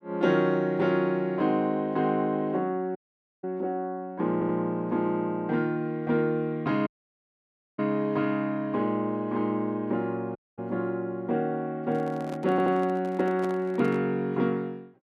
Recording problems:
dropout; at 3 s, at 7 s for 1 s and at 10 s
audio stuttering; at 4.5 s and at 13 s
handling noise; from 12 to 14 s; peak -8 dB vs average level

